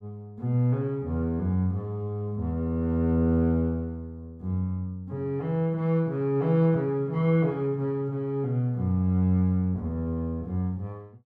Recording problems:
none

